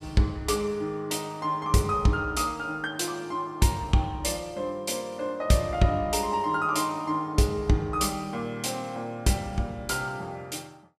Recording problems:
none

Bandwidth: 14.5 kHz